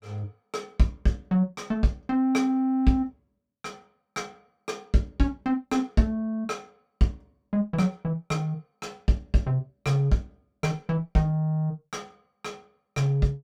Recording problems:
none

